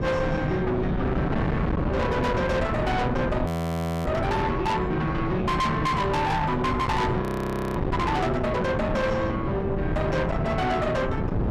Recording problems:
distortion; soft clipping, signal-to-distortion ratio 7 dB
wind noise; below 490 Hz, SNR 3 dB
audio freezing; at 3.5 s for 0.5 s and at 7 s for 0.5 s

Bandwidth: 15 kHz